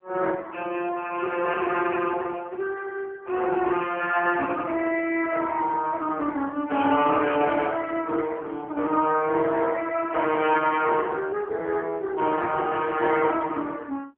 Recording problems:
telephone audio; 170 Hz to 3.2 kHz, AMR-NB

